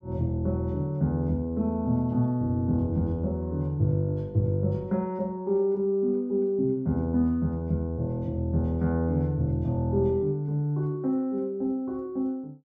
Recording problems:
none

